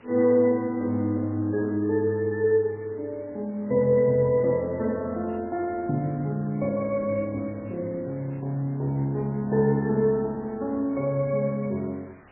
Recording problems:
codec artefacts; MP3, log-spectral distance 8 dB, nothing above 2 kHz
hiss; SNR 28 dB

